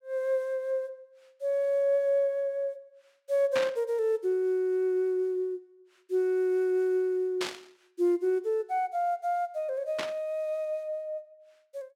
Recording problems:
burst of static; at 3.5 s, at 7.5 s and at 10 s; peak 0 dB vs average level

